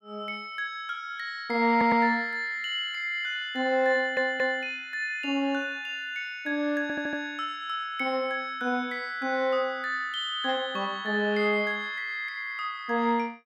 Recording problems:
stutter; at 1.5 s, at 4 s and at 7 s

